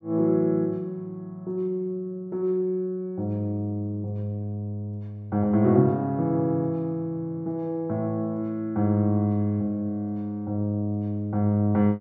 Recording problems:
none

